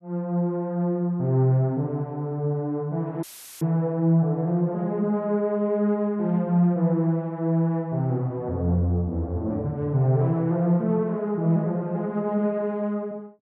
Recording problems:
audio cutting out; at 3 s; filled with static

